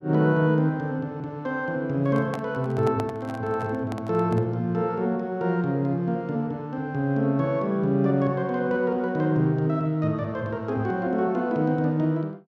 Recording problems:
handling noise; from 2 to 4.5 s; peak -5 dB vs average level

